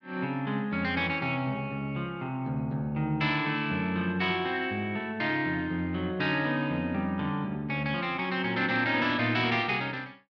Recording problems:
none

